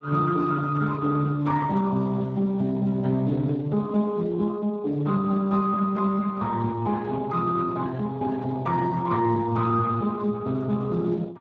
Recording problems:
lossy codec; Speex, log-spectral distance 3 dB

